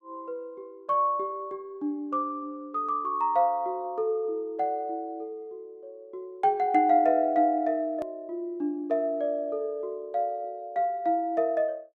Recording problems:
edit click; at 8 s

